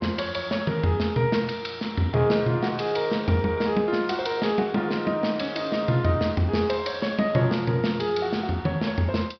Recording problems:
treble cut off; nothing above 5.5 kHz

